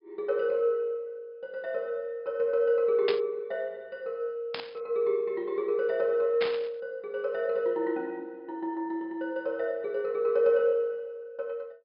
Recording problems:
treble cut off; nothing above 5.5 kHz
static burst; at 3 s, at 4.5 s and at 6.5 s; peak +1 dB vs average level

